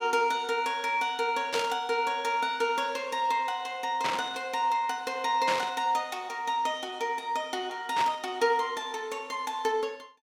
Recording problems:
static burst; 4 times, first at 1.5 s; peak +2 dB vs average level

